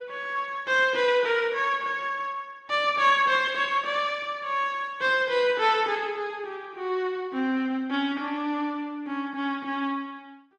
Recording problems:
lossy compression; Opus, log-spectral distance 2 dB

